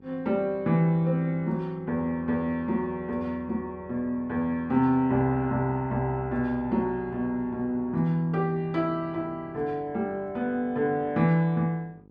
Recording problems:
hum; 50 Hz, harmonics up to 900 Hz, SNR 25 dB

